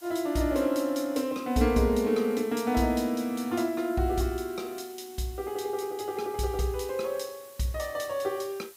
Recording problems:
background hiss; slope +1 dB per octave, SNR 21 dB

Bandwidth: 15.5 kHz